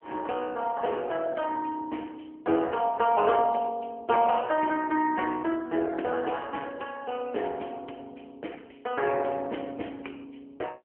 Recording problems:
telephone audio; 260 Hz to 3 kHz, AMR-NB

